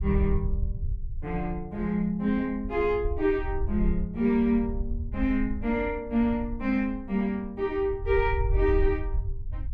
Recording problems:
low-frequency rumble; below 70 Hz, SNR 6 dB

